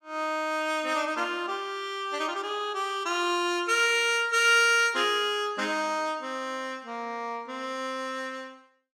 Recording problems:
none

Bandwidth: 16 kHz